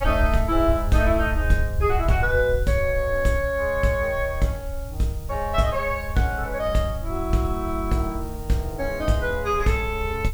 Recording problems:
background hiss; slope +2 dB per octave, SNR 22 dB
low-frequency rumble; below 82 Hz, SNR 6 dB

